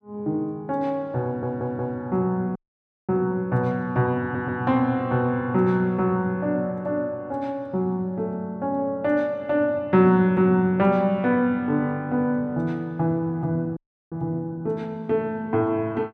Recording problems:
stutter; at 1.5 s and at 4 s
dropout; at 2.5 s for 0.5 s and at 14 s

